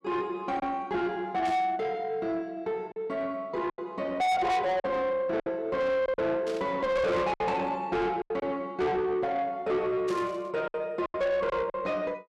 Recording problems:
distortion; soft clipping, signal-to-distortion ratio 7 dB
packet loss; 5% of the sound replaced, filled with silence
burst of static; at 1.5 s, at 6.5 s and at 10 s; peak -10 dB vs average level

